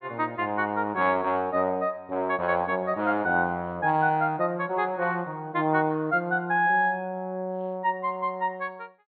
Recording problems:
treble missing; nothing above 4.4 kHz

